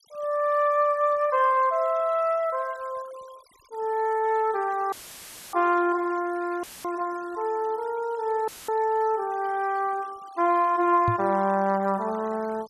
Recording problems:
noise reduction artefacts; signal-to-artefact ratio 25 dB
audio cutting out; at 5 s for 0.5 s, at 6.5 s and at 8.5 s; filled with static
microphone bump; at 11 s; peak 0 dB vs average level

